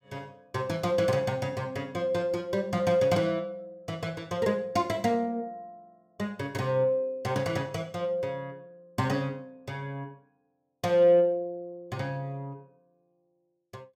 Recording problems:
none

